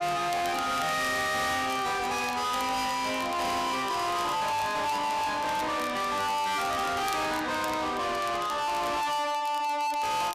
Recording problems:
distorted audio; soft clipping, signal-to-distortion ratio 6 dB
crackle; vinyl, SNR 19 dB

